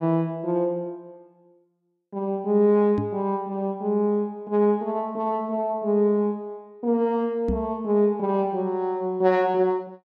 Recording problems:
microphone thump; at 3 s and at 7.5 s; peak 0 dB vs average level

